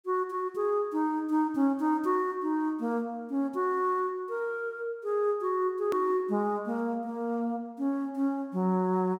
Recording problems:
edit click; at 6 s

